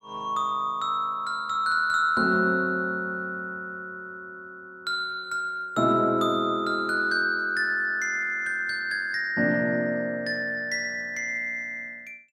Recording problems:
none

